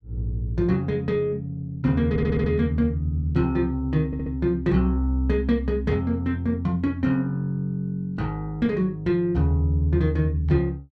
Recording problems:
stutter; at 2 s and at 4 s

